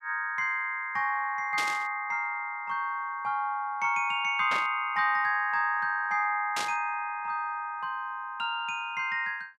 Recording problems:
burst of static; at 1.5 s, at 4.5 s and at 6.5 s; peak 0 dB vs average level

